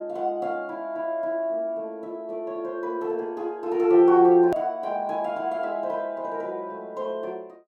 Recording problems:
hard cut with a click; at 4.5 s

